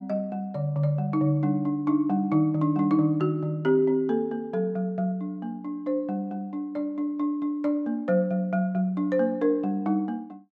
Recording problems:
none

